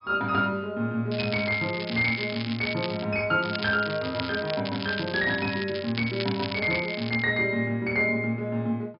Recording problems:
treble missing; nothing above 5.5 kHz
crackle; from 1 to 3 s and from 3.5 to 7 s; loose cable, SNR 10 dB

